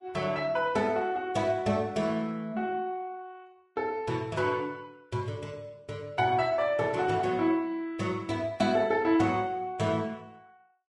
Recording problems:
lossy compression; Vorbis, log-spectral distance 2 dB, nothing above 10.4 kHz

